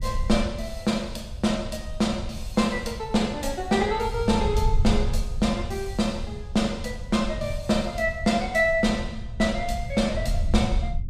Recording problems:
rumble; below 78 Hz, SNR 7 dB

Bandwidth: 15 kHz